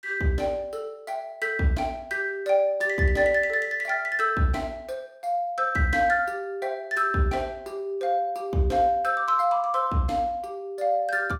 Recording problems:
none

